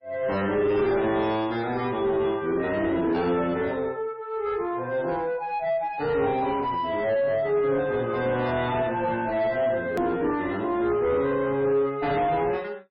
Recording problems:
codec artefacts; MP3, log-spectral distance 2 dB
distortion; soft clipping, signal-to-distortion ratio 10 dB
edit click; at 10 s

